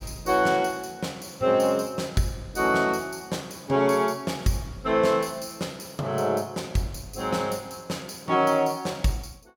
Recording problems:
none

